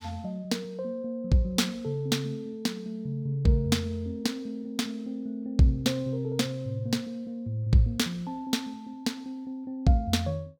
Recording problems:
none

